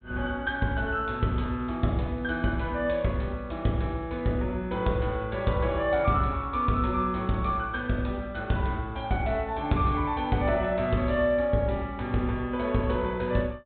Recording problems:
treble cut off; nothing above 4 kHz

